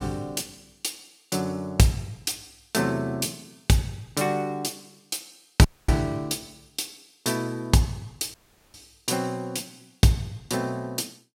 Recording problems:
audio cutting out; at 5.5 s and at 8.5 s

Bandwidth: 16 kHz